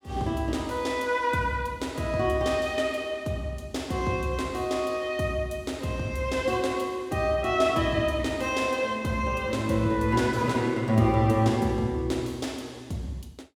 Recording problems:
none

